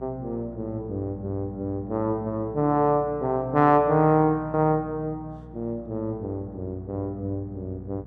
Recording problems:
hum; 60 Hz, harmonics up to 720 Hz, SNR 18 dB

